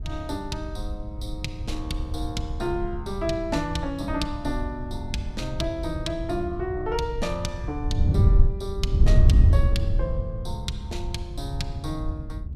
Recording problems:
wind on the microphone; below 92 Hz, SNR -3 dB

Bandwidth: 15 kHz